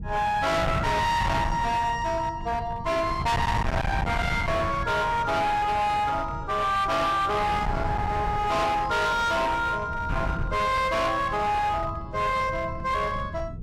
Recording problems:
distortion; hard clipping, uneven, signal-to-distortion ratio 6 dB
wind noise; below 710 Hz, SNR 7 dB

